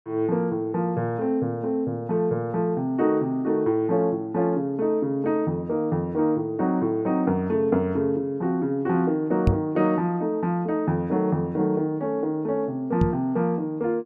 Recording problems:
microphone thump; at 9.5 s and at 13 s; peak +7 dB vs average level

